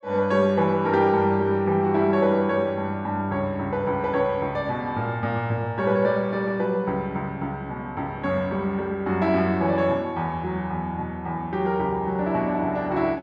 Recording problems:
none

